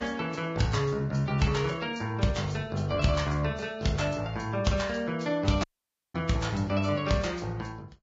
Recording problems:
codec artefacts; Vorbis, log-spectral distance 3 dB, nothing above 7.3 kHz
audio cutting out; at 5.5 s for 0.5 s

